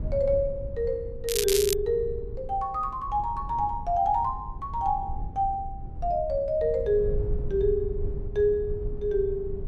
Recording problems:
low-frequency rumble; below 88 Hz, SNR 10 dB
crackle; at 1 s; loose cable, SNR 2 dB

